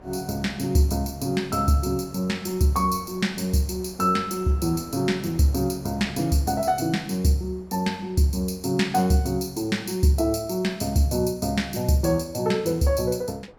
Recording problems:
wind noise; below 740 Hz, SNR 24 dB

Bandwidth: 17.5 kHz